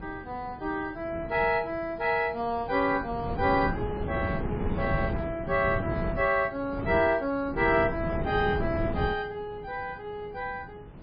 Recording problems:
lossy codec; MP3, log-spectral distance 2 dB, nothing above 4.8 kHz
wind noise; below 330 Hz, SNR 6 dB

